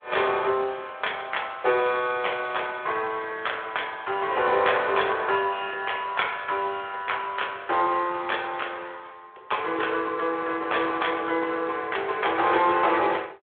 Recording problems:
telephone audio; 320 Hz to 3.5 kHz, Speex

